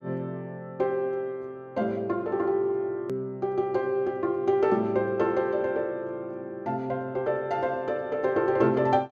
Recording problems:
click at an edit; at 3 s

